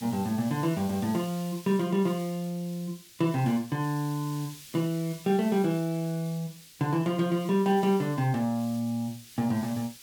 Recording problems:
background hiss; SNR 18 dB

